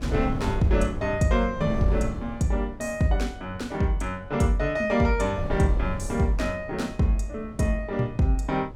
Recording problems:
wind noise; below 180 Hz, SNR 10 dB

